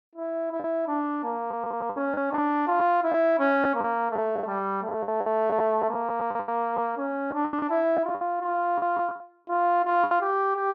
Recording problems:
lost packets; 11% of the sound replaced, filled with the last packet

